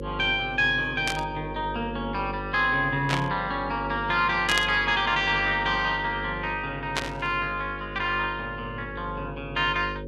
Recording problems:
hum; 50 Hz, harmonics up to 550 Hz, SNR 11 dB
burst of static; 4 times, first at 1 s; peak +3 dB vs average level

